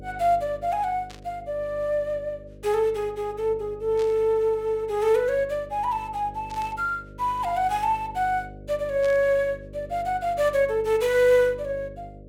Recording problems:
electrical hum; 50 Hz, harmonics up to 600 Hz, SNR 19 dB
burst of static; 4 times, first at 1 s; peak -12 dB vs average level

